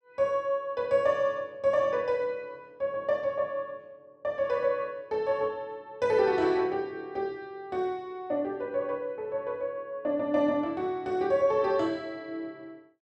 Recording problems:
none

